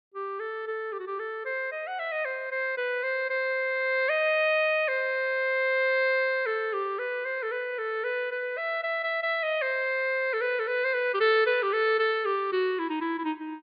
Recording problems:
treble missing; nothing above 4.8 kHz

